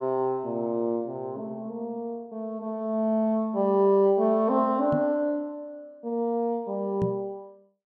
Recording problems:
microphone bump; at 5 s and at 7 s; peak +2 dB vs average level

